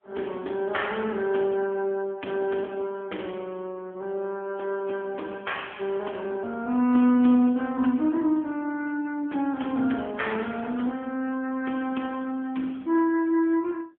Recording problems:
telephone audio; 190 Hz to 3.4 kHz, AMR-NB

